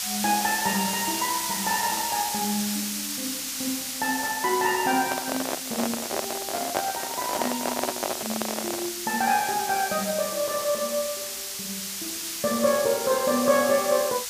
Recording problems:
hiss; slope +4 dB per octave, SNR 3 dB
handling noise; from 5 to 9 s; peak +4 dB vs average level

